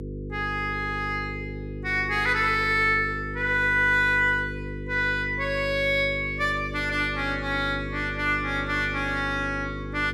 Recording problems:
hum; 50 Hz, harmonics up to 500 Hz, SNR 10 dB

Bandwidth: 14.5 kHz